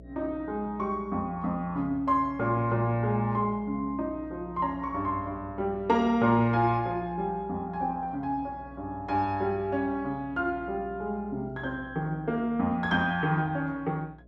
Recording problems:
hum; 60 Hz, harmonics up to 660 Hz, SNR 21 dB

